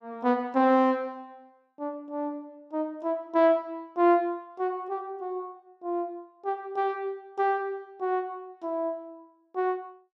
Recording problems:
none

